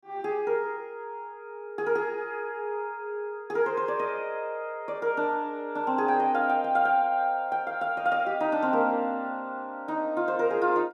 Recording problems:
none

